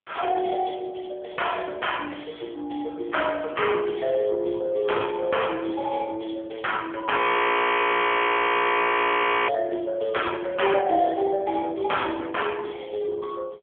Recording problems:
phone line; 240 Hz to 3.3 kHz, AMR-NB
frozen audio; at 7 s for 2.5 s

